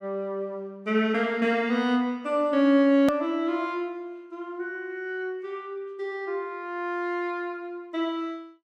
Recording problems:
edit click; at 3 s

